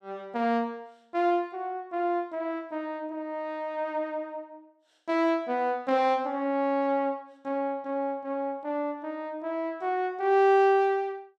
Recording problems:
none

